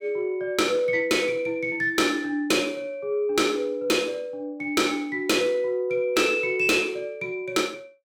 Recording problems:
distortion; soft clipping, signal-to-distortion ratio 12 dB

